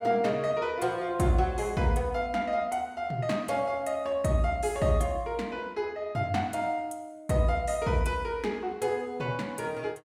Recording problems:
none

